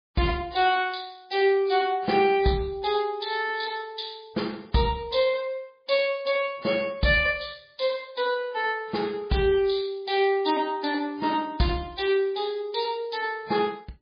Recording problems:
codec artefacts; MP3, log-spectral distance 6 dB, nothing above 4.5 kHz

